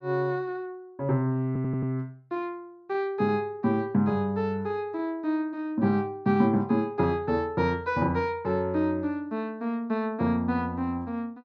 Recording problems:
stutter; at 1.5 s

